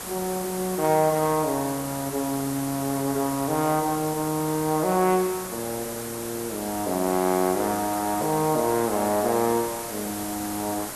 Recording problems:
hiss; slope -3 dB per octave, SNR 8 dB

